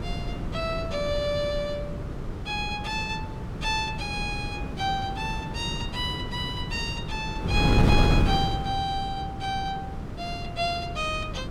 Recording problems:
wind on the microphone; below 260 Hz, SNR 1 dB

